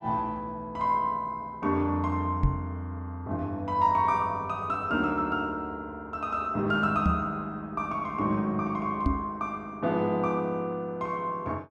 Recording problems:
knock on the microphone; at 2.5 s, at 7 s and at 9 s; peak +7 dB vs average level

